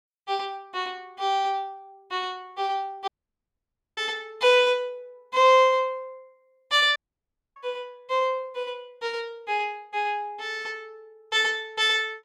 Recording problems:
audio cutting out; at 3 s for 1 s and at 7 s for 0.5 s

